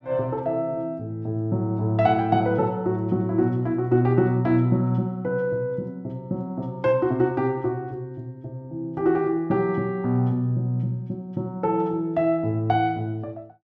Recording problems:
none

